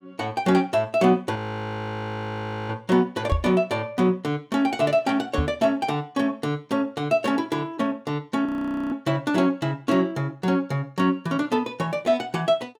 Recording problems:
audio freezing; at 1.5 s for 1.5 s and at 8.5 s
microphone thump; at 3.5 s and at 5.5 s; peak +4 dB vs average level

